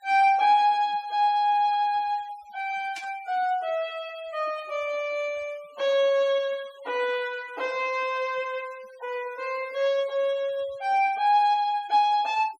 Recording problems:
noise reduction artefacts; signal-to-artefact ratio 24 dB
burst of static; at 3 s; peak -11 dB vs average level

